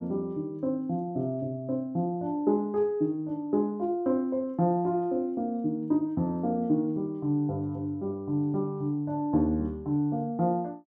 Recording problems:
none

